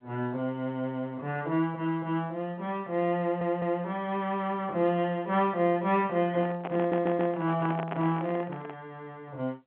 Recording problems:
telephone audio; 220 Hz to 3.3 kHz, G.711
audio stuttering; at 3 s and at 7 s
handling noise; from 6.5 to 9 s; peak -2 dB vs average level

